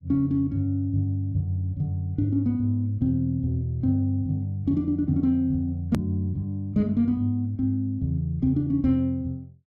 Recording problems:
click at an edit; at 6 s

